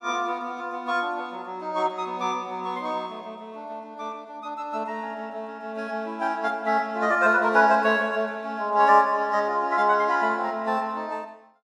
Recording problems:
none

